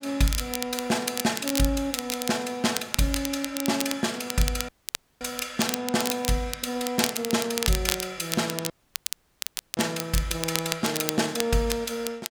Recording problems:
crackle; vinyl, SNR 5 dB
audio cutting out; at 4.5 s for 0.5 s and at 8.5 s for 1 s

